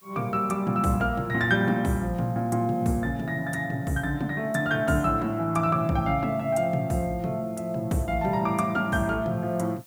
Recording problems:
background hiss; slope -1 dB per octave, SNR 29 dB

